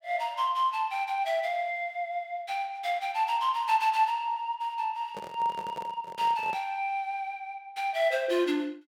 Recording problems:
microphone handling noise; from 5 to 6.5 s; peak -8 dB vs average level

